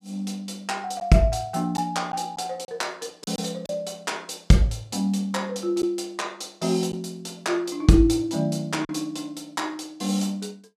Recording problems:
lost packets; 2% of the sound replaced, filled with silence

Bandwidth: 14.5 kHz